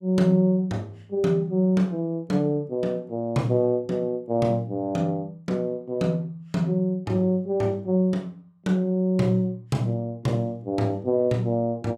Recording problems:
none

